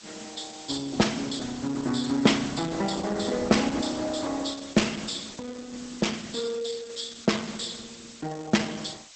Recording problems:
lossy compression; Opus, log-spectral distance 14 dB, nothing above 8.2 kHz
hiss; slope +4 dB per octave, SNR 16 dB

